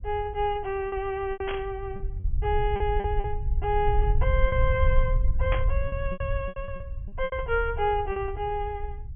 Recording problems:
low-pass filter; nothing above 3.3 kHz
rumble; below 68 Hz, SNR 1 dB
packet loss; 9% of the sound replaced, filled with repeated pitch periods
burst of static; at 1.5 s and at 5.5 s; peak 0 dB vs average level

